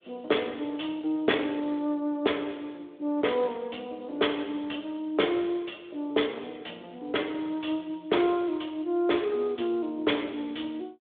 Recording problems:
telephone audio; 260 Hz to 3.6 kHz, Speex

